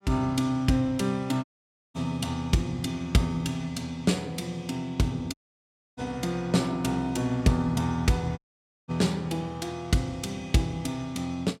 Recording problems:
audio cutting out; at 1.5 s for 0.5 s, at 5.5 s for 0.5 s and at 8.5 s for 0.5 s

